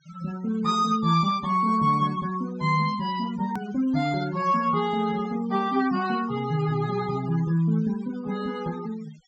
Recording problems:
treble cut off; nothing above 8 kHz
denoising artefacts; signal-to-artefact ratio 18 dB
hard cut with a click; at 3.5 s

